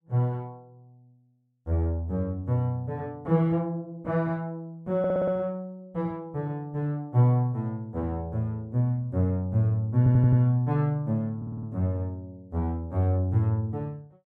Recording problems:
audio stuttering; at 5 s, at 10 s and at 11 s

